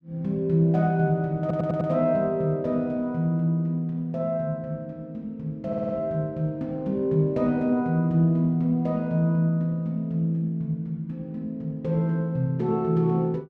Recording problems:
audio stuttering; at 1.5 s and at 5.5 s

